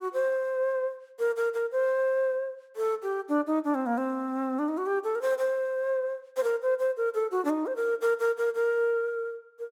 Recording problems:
none

